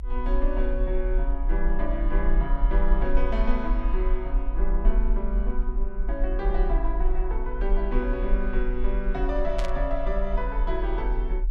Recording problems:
rumble; below 42 Hz, SNR -3 dB
burst of static; at 9.5 s; peak -2 dB vs average level

